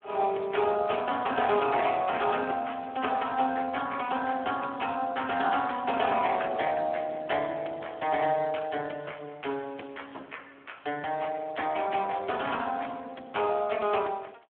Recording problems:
phone line; 280 Hz to 3.3 kHz, Speex

